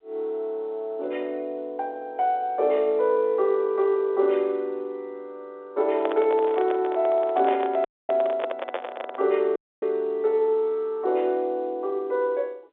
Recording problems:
telephone audio; 320 Hz to 3.7 kHz, G.711
microphone handling noise; from 6 to 9.5 s; peak -1 dB vs average level
audio cutting out; at 8 s and at 9.5 s

